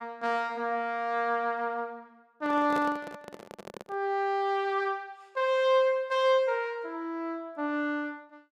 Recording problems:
microphone handling noise; from 2.5 to 4 s; peak -3 dB vs average level

